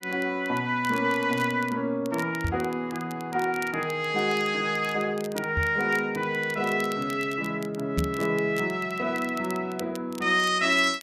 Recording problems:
crackle; vinyl, SNR 20 dB
microphone bump; at 2.5 s, at 5.5 s and at 8 s; peak +3 dB vs average level

